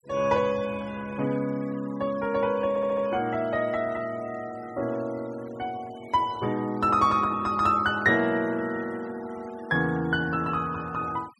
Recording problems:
noise reduction artefacts; signal-to-artefact ratio 23 dB
audio stuttering; at 2.5 s

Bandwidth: 12 kHz